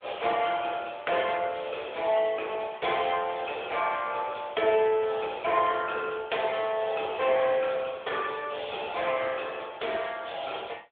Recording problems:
phone line; 340 Hz to 3.5 kHz, AMR-NB

